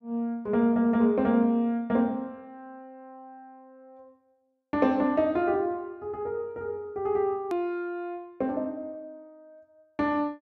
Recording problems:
click at an edit; at 7.5 s

